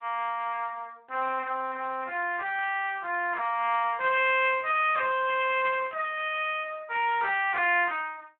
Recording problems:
phone line; 280 Hz to 3.5 kHz, Speex
static burst; at 2.5 s, at 4.5 s and at 6 s; peak -18 dB vs average level

